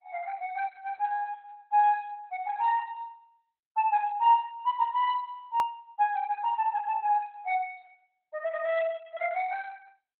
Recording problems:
lossy codec; Opus, log-spectral distance 2 dB, nothing above 16.6 kHz
click at an edit; at 5.5 s

